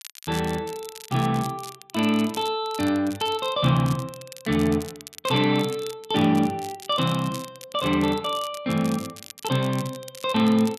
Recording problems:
crackling; vinyl, SNR 17 dB

